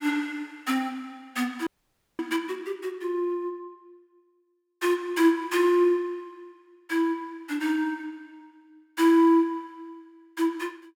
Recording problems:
frozen audio; at 1.5 s for 0.5 s

